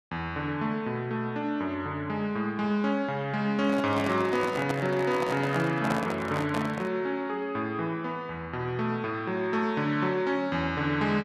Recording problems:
microphone handling noise; from 3.5 to 7 s; peak +2 dB vs average level

